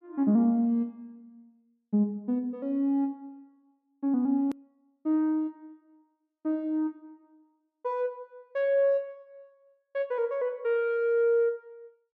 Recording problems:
edit click; at 4.5 s

